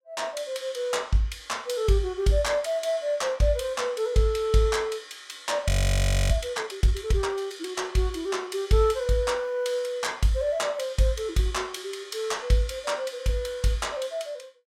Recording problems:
audio freezing; at 5.5 s for 0.5 s

